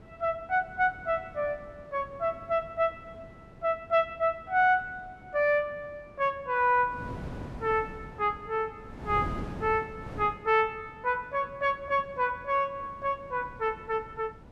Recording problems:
wind on the microphone; below 390 Hz, SNR 16 dB

